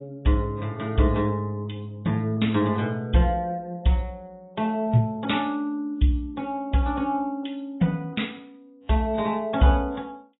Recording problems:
codec artefacts; AAC, log-spectral distance 2 dB, nothing above 3.8 kHz

